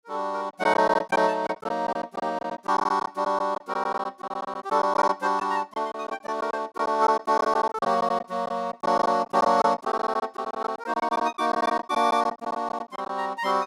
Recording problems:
lost packets; 12% of the sound replaced, filled with silence

